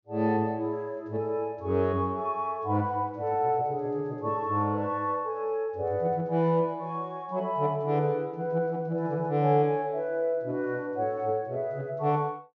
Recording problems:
treble missing; nothing above 6.8 kHz

